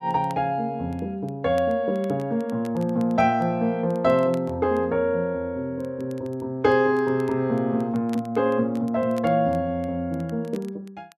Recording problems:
crackle; vinyl, SNR 29 dB

